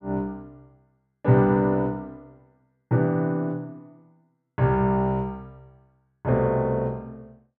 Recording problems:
none

